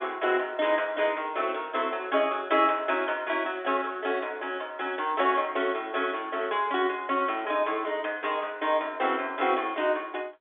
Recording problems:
phone line; 300 Hz to 3.6 kHz, G.711

